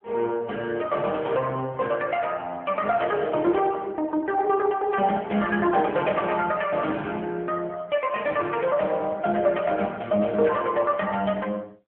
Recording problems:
telephone audio; 170 Hz to 3.4 kHz, AMR-NB

